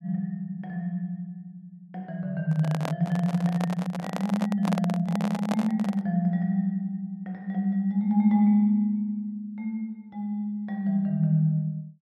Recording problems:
handling noise; from 2.5 to 6 s; peak -1 dB vs average level

